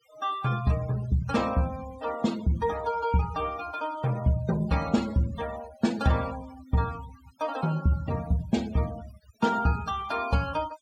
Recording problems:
noise reduction artefacts; signal-to-artefact ratio 17 dB

